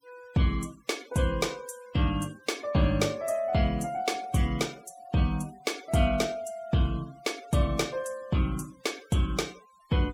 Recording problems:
denoising artefacts; signal-to-artefact ratio 23 dB

